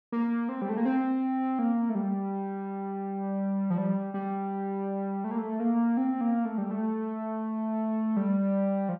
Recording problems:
none

